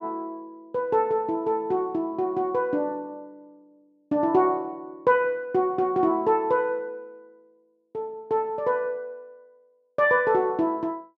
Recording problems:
none

